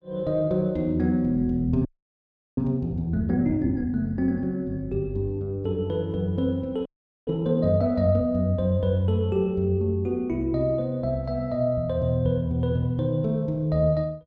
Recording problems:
audio freezing; at 2 s for 0.5 s and at 7 s

